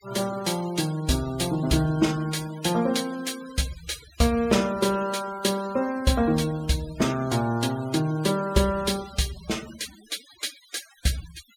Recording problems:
denoising artefacts; signal-to-artefact ratio 17 dB

